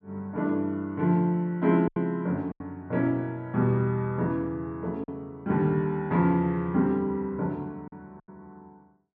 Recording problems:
packet loss; 4% of the sound replaced, filled with silence

